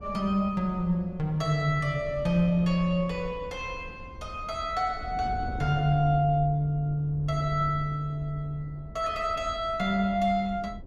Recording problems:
wind noise; below 130 Hz, SNR 15 dB

